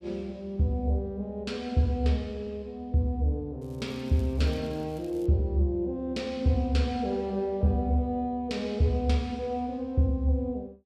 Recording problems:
crackling; from 3.5 to 5.5 s; loose cable, SNR 30 dB

